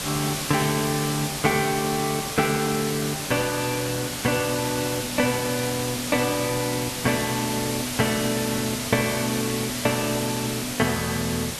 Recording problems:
hiss; slope -1 dB per octave, SNR 3 dB

